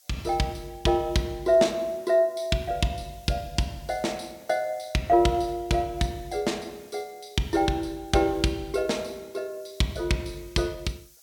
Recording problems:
hiss; SNR 26 dB

